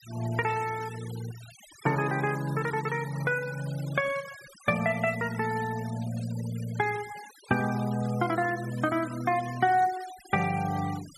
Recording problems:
noise reduction artefacts; signal-to-artefact ratio 17 dB

